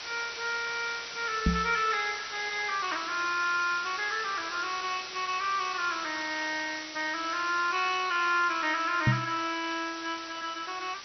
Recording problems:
lossy codec; MP2, log-spectral distance 18 dB, nothing above 5.3 kHz
background hiss; slope +1 dB per octave, SNR 9 dB
microphone thump; at 1.5 s and at 9 s; peak +8 dB vs average level

